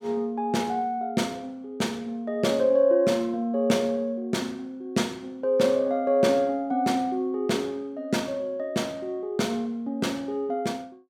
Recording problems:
none

